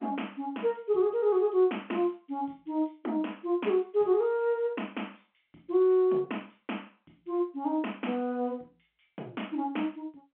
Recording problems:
telephone audio; 190 Hz to 3.3 kHz, G.711

